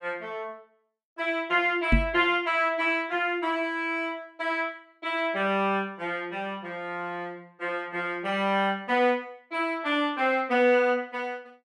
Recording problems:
microphone thump; at 2 s; peak +8 dB vs average level

